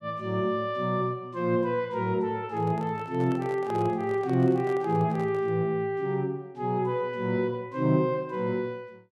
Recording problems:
handling noise; from 2.5 to 5.5 s; peak -9 dB vs average level

